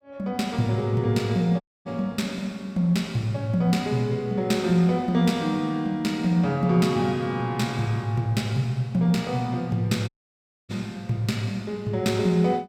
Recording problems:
dropout; at 1.5 s and at 10 s for 0.5 s

